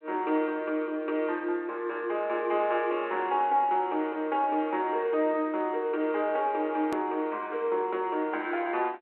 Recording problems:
phone line; 260 Hz to 3.6 kHz, G.726
click at an edit; at 7 s

